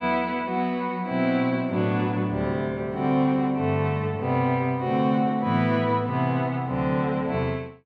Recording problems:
none

